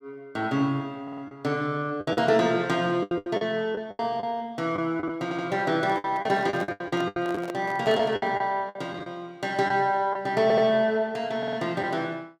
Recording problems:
packet loss; 10% of the sound replaced, filled with the last packet
stutter; 4 times, first at 1 s
microphone handling noise; from 6 to 8.5 s; peak -6 dB vs average level

